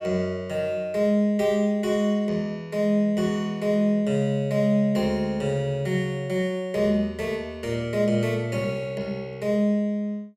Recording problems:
none

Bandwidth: 14.5 kHz